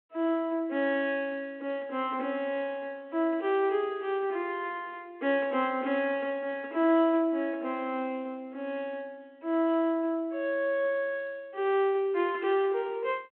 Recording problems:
phone line; 240 Hz to 3.5 kHz, G.726

